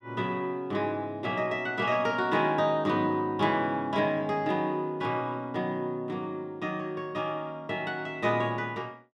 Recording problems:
none

